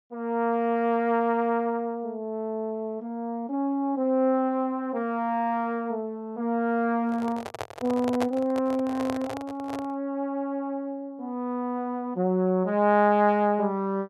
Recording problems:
handling noise; from 7 to 10 s; peak 0 dB vs average level

